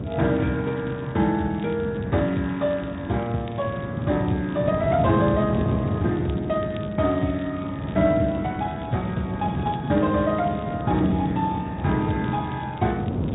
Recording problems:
treble missing; nothing above 3.8 kHz
codec artefacts; Speex, log-spectral distance 3 dB
wind on the microphone; below 300 Hz, SNR 5 dB
crackling; vinyl, SNR 27 dB

